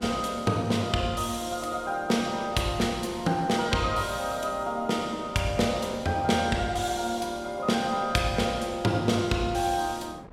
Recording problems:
wind on the microphone; below 710 Hz, SNR 21 dB

